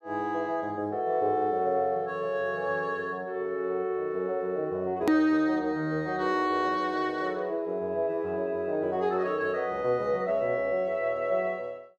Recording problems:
edit click; at 5 s

